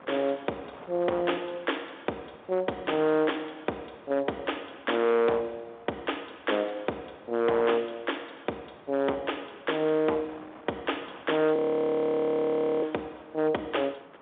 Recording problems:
phone line; 370 Hz to 3.6 kHz, G.711
distorted audio; hard clipping, signal-to-distortion ratio 13 dB
wind noise; below 1.3 kHz, SNR 22 dB
frozen audio; at 12 s for 1.5 s

